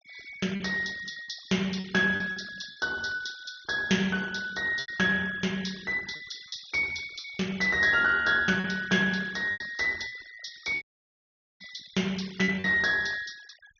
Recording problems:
low-pass filter; nothing above 6.6 kHz
denoising artefacts; signal-to-artefact ratio 22 dB
lost packets; 7% of the sound replaced, filled with repeated pitch periods
audio cutting out; at 11 s for 1 s

